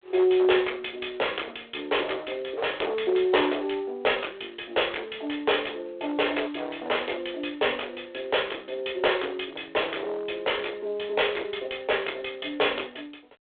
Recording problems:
phone line; 320 Hz to 3.6 kHz, G.726
distorted audio; hard clipping, signal-to-distortion ratio 13 dB

